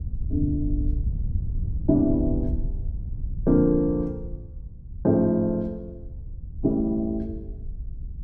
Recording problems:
wind noise; below 86 Hz, SNR 8 dB

